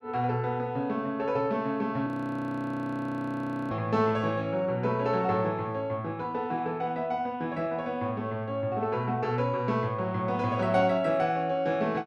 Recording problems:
frozen audio; at 2 s for 1.5 s

